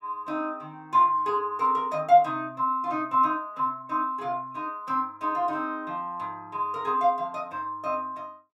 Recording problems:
none

